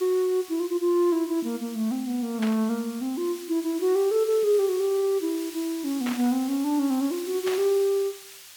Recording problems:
background hiss; slope +4 dB per octave, SNR 16 dB
static burst; at 2.5 s, at 6 s and at 7.5 s; peak -5 dB vs average level

